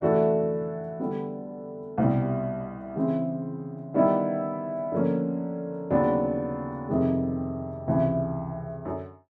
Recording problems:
none

